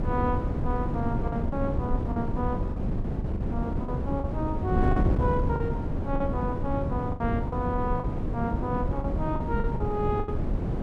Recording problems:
wind on the microphone; below 230 Hz, SNR -3 dB
lost packets; 8% of the sound replaced, filled with the last packet

